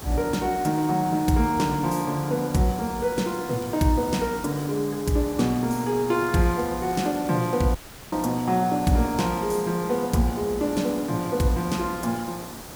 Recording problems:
background hiss; SNR 14 dB
crackle; from 3 to 4 s and from 6 to 7.5 s; loose cable, SNR 26 dB
dropout; at 8 s

